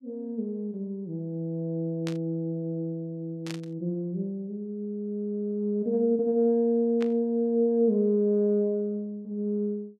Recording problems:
burst of static; at 2 s, at 3.5 s and at 7 s; peak -6 dB vs average level

